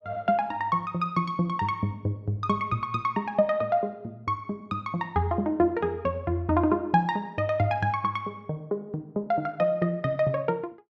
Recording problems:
none

